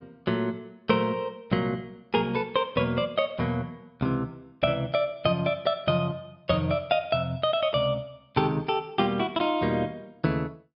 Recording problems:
treble missing; nothing above 5.5 kHz

